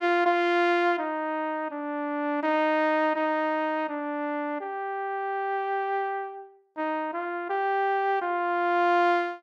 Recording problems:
none

